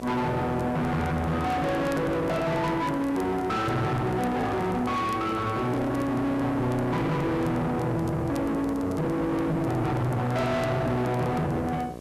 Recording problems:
distortion; soft clipping, signal-to-distortion ratio 5 dB
hum; 60 Hz, harmonics up to 1.8 kHz, SNR 14 dB
hiss; slope -2 dB per octave, SNR 28 dB
crackling; vinyl, SNR 27 dB
microphone handling noise; from 3 to 6 s; peak -5 dB vs average level

